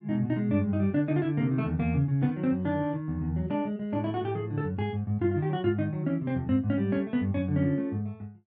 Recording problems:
none

